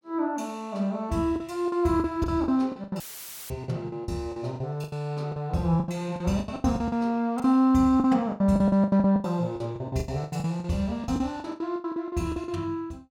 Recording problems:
packet loss; 19% of the sound replaced, filled with the last packet
dropout; at 3 s for 0.5 s; filled with static

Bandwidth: 17 kHz